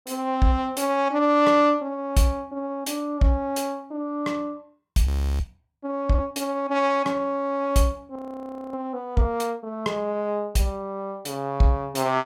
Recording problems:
frozen audio; at 5 s and at 8 s for 0.5 s

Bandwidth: 16 kHz